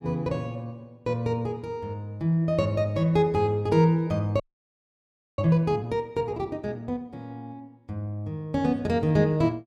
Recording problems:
frozen audio; at 4.5 s for 1 s

